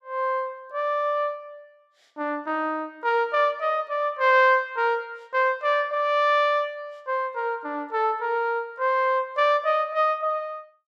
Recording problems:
none

